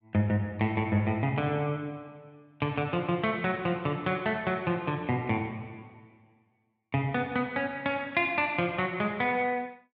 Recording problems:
none

